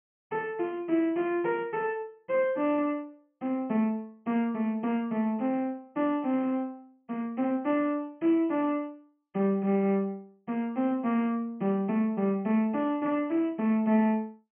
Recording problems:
treble missing; nothing above 3.1 kHz

